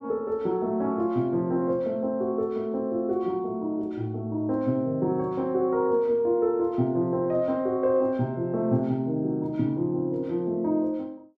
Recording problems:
none

